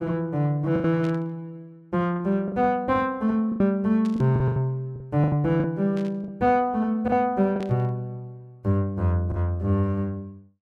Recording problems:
lost packets; 7% of the sound replaced, filled with the last packet
static burst; 4 times, first at 1 s; peak -14 dB vs average level

